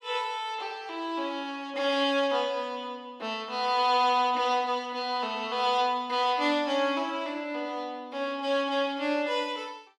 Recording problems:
none

